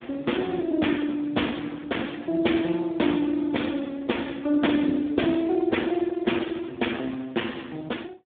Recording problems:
phone line; 240 Hz to 3.5 kHz, Speex

